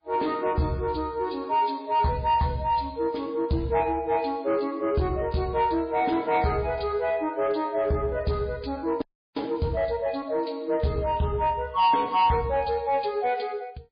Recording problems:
lossy compression; MP3, log-spectral distance 2 dB, nothing above 4.5 kHz
distortion; soft clipping, signal-to-distortion ratio 12 dB
frozen audio; at 9 s

